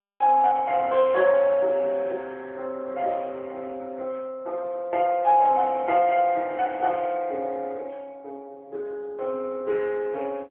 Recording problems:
telephone audio; 280 Hz to 3.6 kHz, AMR-NB

